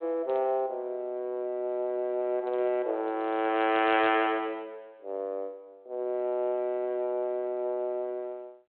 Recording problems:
telephone audio; 300 Hz to 3.4 kHz, G.726

